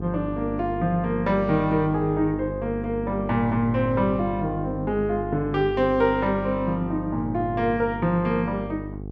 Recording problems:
hum; 50 Hz, harmonics up to 800 Hz, SNR 10 dB

